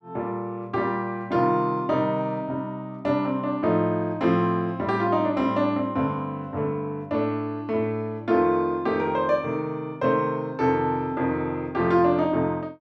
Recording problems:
none

